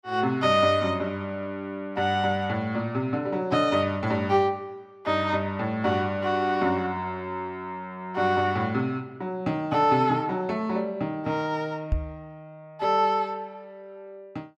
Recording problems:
microphone bump; at 12 s; peak +4 dB vs average level

